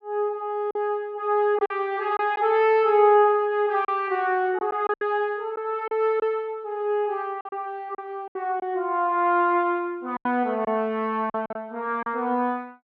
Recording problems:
lost packets; 6% of the sound replaced, filled with silence

